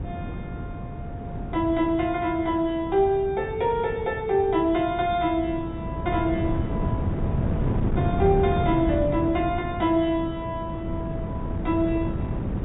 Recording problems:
low-pass filter; nothing above 4 kHz
hiss; SNR 30 dB
wind noise; below 240 Hz, SNR 5 dB

